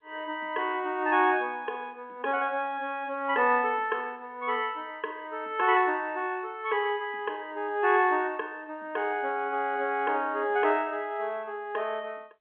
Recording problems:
phone line; 260 Hz to 3.5 kHz, G.711

